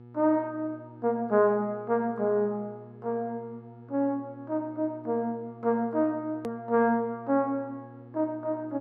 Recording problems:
hum; 60 Hz, harmonics up to 1.3 kHz, SNR 20 dB
hard cut with a click; at 6.5 s

